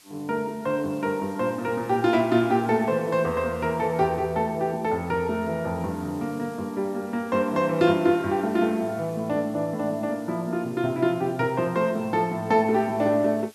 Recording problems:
background hiss; slope +2 dB per octave, SNR 26 dB

